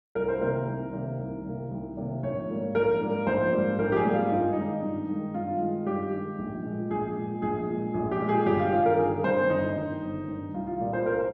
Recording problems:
none

